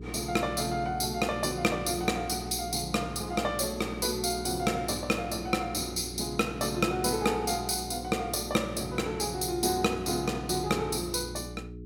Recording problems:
hum; 60 Hz, harmonics up to 420 Hz, SNR 12 dB

